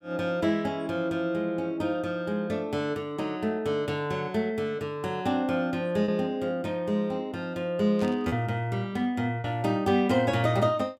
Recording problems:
packet loss; 1.1% of the sound replaced, filled with repeated pitch periods
static burst; at 8 s; peak -13 dB vs average level

